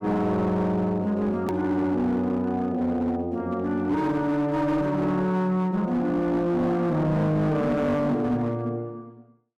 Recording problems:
distortion; hard clipping, signal-to-distortion ratio 11 dB
edit click; at 1.5 s

